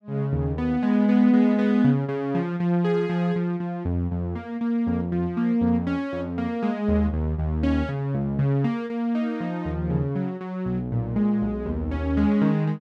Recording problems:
none

